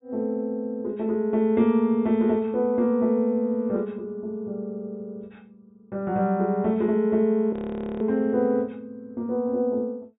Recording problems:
treble missing; nothing above 4 kHz
audio freezing; at 7.5 s

